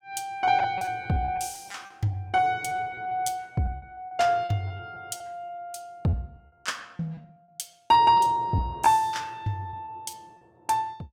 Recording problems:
lost packets; 12% of the sound replaced, filled with repeated pitch periods

